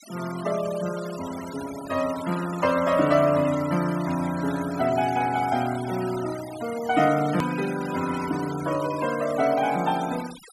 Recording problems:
noise reduction artefacts; signal-to-artefact ratio 15 dB
edit click; at 7.5 s

